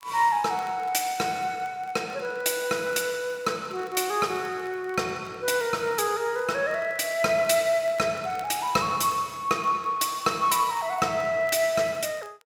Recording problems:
crackle; vinyl, SNR 29 dB

